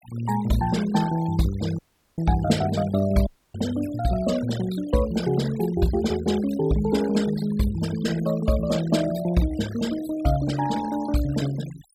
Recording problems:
noise reduction artefacts; signal-to-artefact ratio 16 dB
audio cutting out; at 2 s and at 3.5 s

